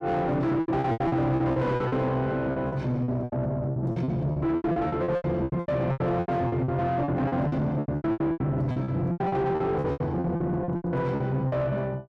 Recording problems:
distortion; soft clipping, signal-to-distortion ratio 7 dB
packet loss; 21% of the sound replaced, filled with repeated pitch periods

